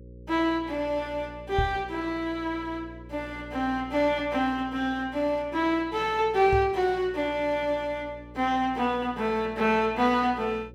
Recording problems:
hum; 60 Hz, harmonics up to 540 Hz, SNR 20 dB
microphone bump; at 1.5 s and at 6.5 s; peak +2 dB vs average level

